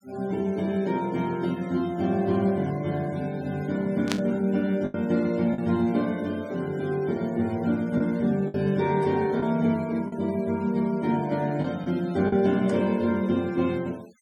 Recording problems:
denoising artefacts; signal-to-artefact ratio 24 dB
lost packets; 3% of the sound replaced, filled with the last packet
static burst; at 4 s; peak +1 dB vs average level

